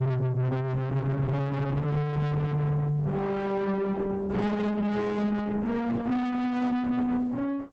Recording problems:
codec artefacts; Opus, log-spectral distance 2 dB
distortion; soft clipping, signal-to-distortion ratio 7 dB

